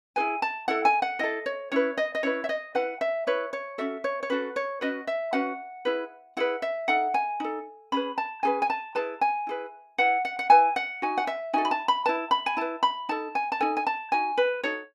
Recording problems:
none

